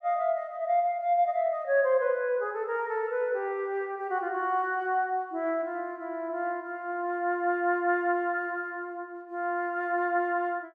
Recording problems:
none

